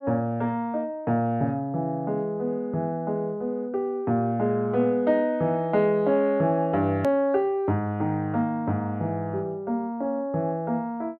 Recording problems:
hard cut with a click; at 7 s

